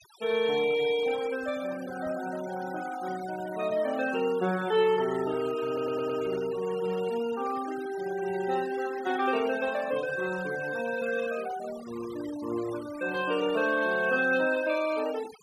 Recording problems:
denoising artefacts; signal-to-artefact ratio 17 dB
stutter; at 5.5 s

